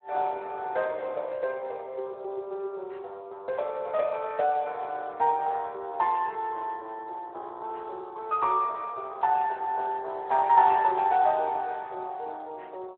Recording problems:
phone line; 320 Hz to 3.8 kHz, Speex

